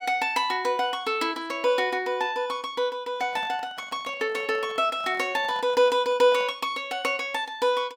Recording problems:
handling noise; from 3 to 6.5 s; peak -11 dB vs average level

